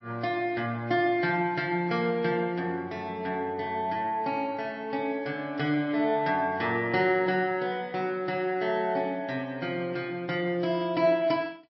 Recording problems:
lossy codec; MP3, log-spectral distance 2 dB, nothing above 5.3 kHz

